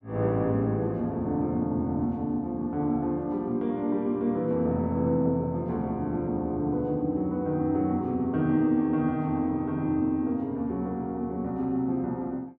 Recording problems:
none

